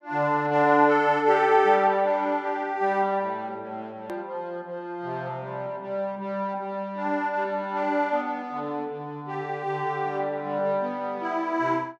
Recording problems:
click at an edit; at 4 s

